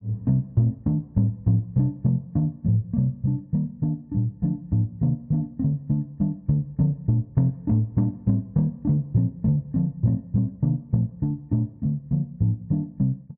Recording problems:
none

